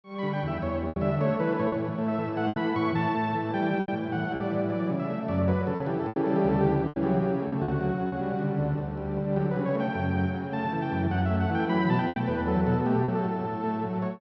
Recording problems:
packet loss; 5% of the sound replaced, filled with repeated pitch periods

